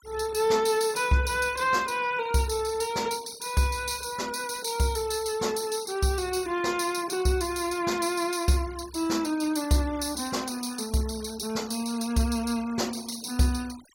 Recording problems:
denoising artefacts; signal-to-artefact ratio 19 dB

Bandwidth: 16.5 kHz